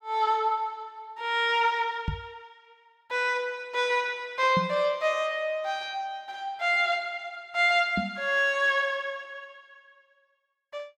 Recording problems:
microphone thump; at 2 s, at 4.5 s and at 8 s; peak +1 dB vs average level

